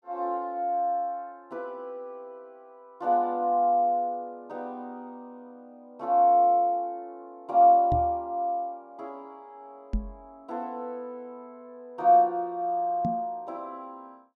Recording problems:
microphone thump; at 8 s, at 10 s and at 13 s; peak -1 dB vs average level

